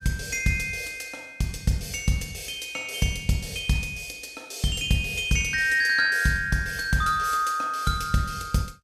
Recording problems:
none

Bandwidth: 15 kHz